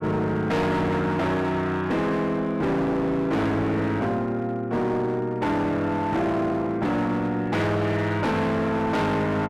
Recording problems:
distortion; hard clipping, signal-to-distortion ratio 8 dB

